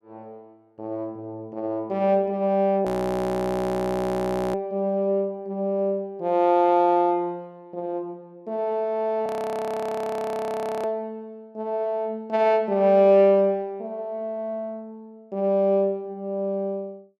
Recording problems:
audio freezing; at 3 s for 1.5 s and at 9.5 s for 1.5 s

